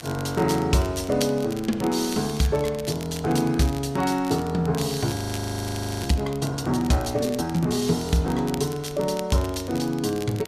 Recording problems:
wind on the microphone; below 1.2 kHz, SNR 23 dB
crackle; vinyl, SNR 17 dB
audio freezing; at 5 s for 1 s

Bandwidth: 14.5 kHz